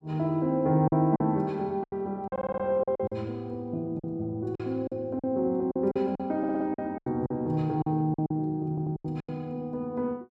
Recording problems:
lost packets; 11% of the sound replaced, filled with silence
audio stuttering; at 2.5 s, at 6.5 s and at 8.5 s

